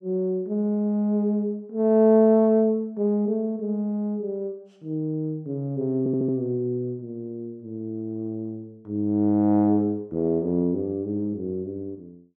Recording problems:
audio stuttering; at 6 s

